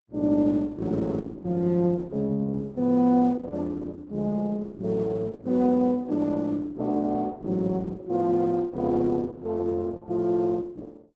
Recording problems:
codec artefacts; Opus, log-spectral distance 2 dB, nothing above 7.8 kHz

